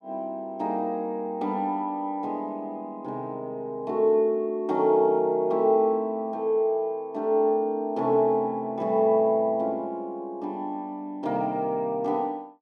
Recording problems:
none

